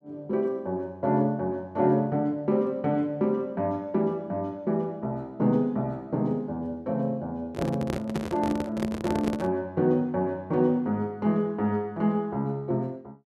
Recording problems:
handling noise; from 7.5 to 9.5 s; peak +1 dB vs average level

